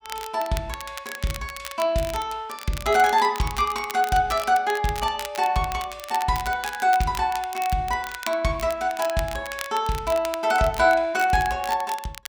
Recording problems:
crackling; vinyl, SNR 14 dB

